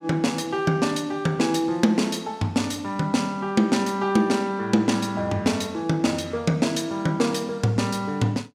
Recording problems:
none

